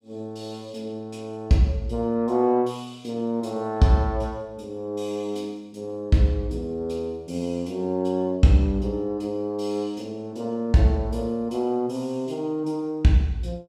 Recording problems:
none

